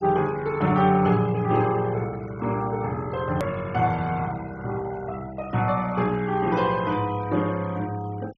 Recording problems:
treble missing; nothing above 7.8 kHz
noise reduction artefacts; signal-to-artefact ratio 21 dB
hard cut with a click; at 3.5 s

